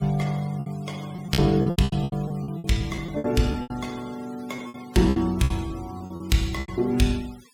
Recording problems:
denoising artefacts; signal-to-artefact ratio 21 dB
lost packets; 16% of the sound replaced, filled with repeated pitch periods

